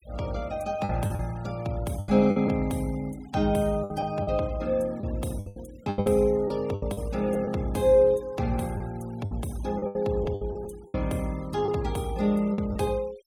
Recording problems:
denoising artefacts; signal-to-artefact ratio 24 dB
packet loss; 10% of the sound replaced, filled with the last packet

